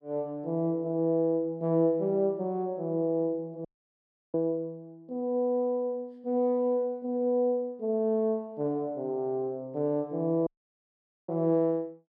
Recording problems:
audio cutting out; at 3.5 s for 0.5 s and at 10 s for 1 s

